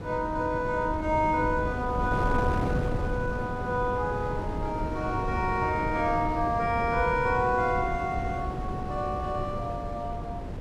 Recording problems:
wind on the microphone; below 330 Hz, SNR 5 dB

